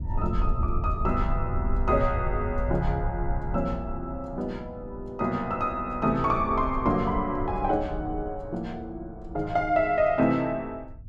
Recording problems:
rumble; below 80 Hz, SNR 6 dB

